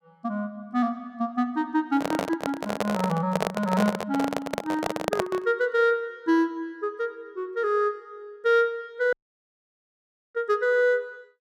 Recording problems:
microphone handling noise; from 2 to 5.5 s; peak +4 dB vs average level
audio cutting out; at 9 s for 1 s

